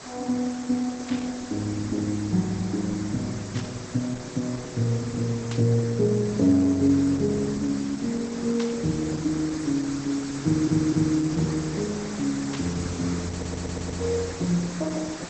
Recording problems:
codec artefacts; Opus, log-spectral distance 10 dB, nothing above 7.6 kHz
hiss; SNR 11 dB
burst of static; 5 times, first at 1 s; peak -6 dB vs average level
stutter; at 10 s and at 13 s

